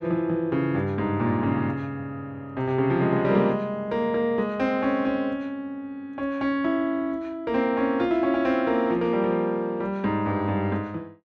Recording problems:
none

